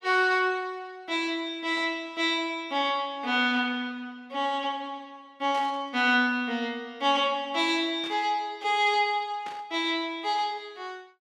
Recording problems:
static burst; at 5.5 s, at 8 s and at 9.5 s; peak -11 dB vs average level

